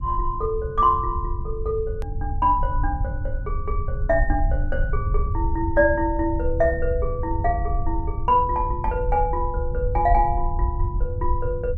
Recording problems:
low-frequency rumble; below 72 Hz, SNR 4 dB
edit click; at 2 s

